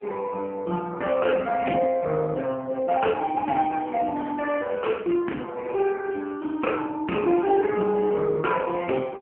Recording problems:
telephone audio; 220 Hz to 3.1 kHz, AMR-NB

